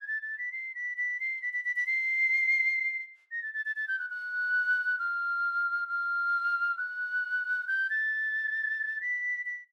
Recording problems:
none

